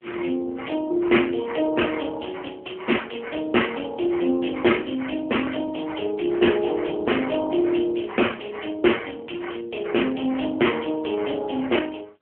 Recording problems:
phone line; 280 Hz to 3.3 kHz, AMR-NB

